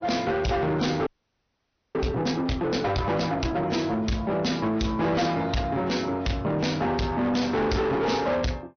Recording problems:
treble cut off; nothing above 6 kHz
lossy compression; MP3, log-spectral distance 3 dB
distorted audio; soft clipping, signal-to-distortion ratio 8 dB
frozen audio; at 1 s for 1 s

